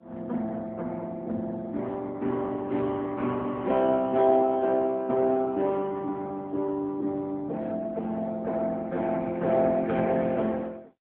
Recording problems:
telephone audio; 150 Hz to 2.9 kHz, AMR-NB

